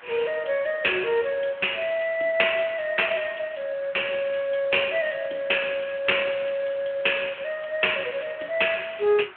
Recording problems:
telephone audio; 240 Hz to 3.4 kHz, Speex
background hiss; SNR 22 dB

